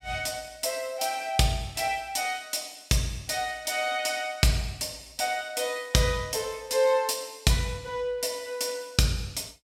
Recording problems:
none

